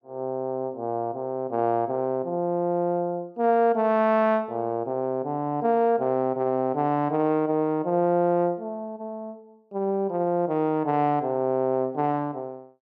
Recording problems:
none

